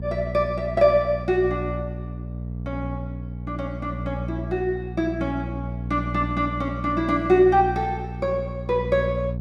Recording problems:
hum; 60 Hz, harmonics up to 480 Hz, SNR 8 dB

